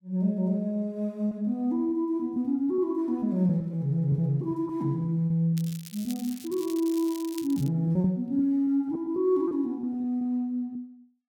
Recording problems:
lost packets; 6% of the sound replaced, filled with repeated pitch periods
crackling; from 5.5 to 7.5 s; loose cable, SNR 17 dB

